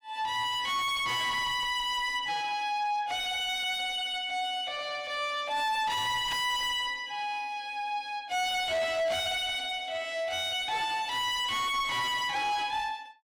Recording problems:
distortion; soft clipping, signal-to-distortion ratio 5 dB

